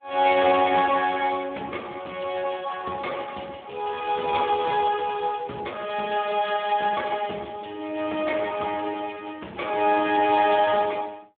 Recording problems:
telephone audio; 280 Hz to 3.6 kHz, Speex

